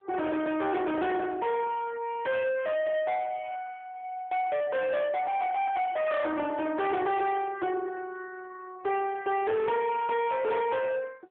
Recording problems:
telephone audio; 320 Hz to 3.8 kHz, AMR-NB
distorted audio; soft clipping, signal-to-distortion ratio 7 dB

